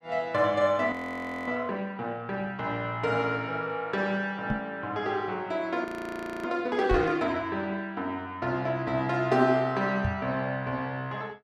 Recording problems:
audio freezing; at 1 s for 0.5 s and at 6 s for 0.5 s
microphone bump; at 4.5 s, at 7 s and at 10 s; peak +2 dB vs average level

